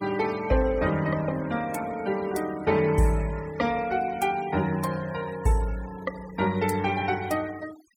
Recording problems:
denoising artefacts; signal-to-artefact ratio 19 dB

